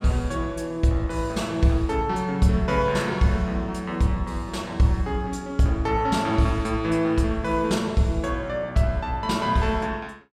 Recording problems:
none

